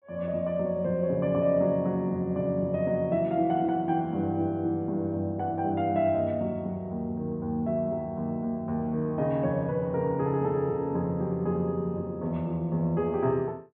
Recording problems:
treble cut off; nothing above 3.6 kHz

